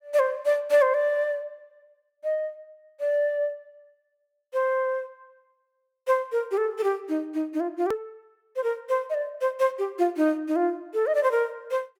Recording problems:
edit click; at 8 s

